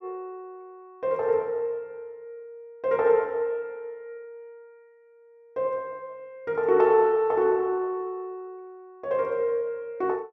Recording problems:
none

